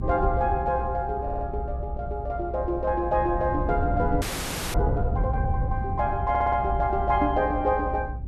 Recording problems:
low-frequency rumble; below 110 Hz, SNR 5 dB
audio stuttering; at 1 s and at 6.5 s
frozen audio; at 4 s for 0.5 s

